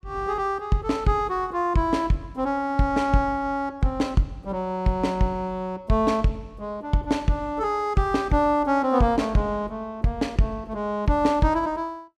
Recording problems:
none

